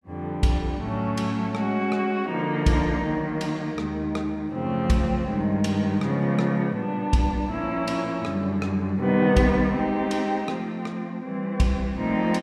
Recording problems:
none

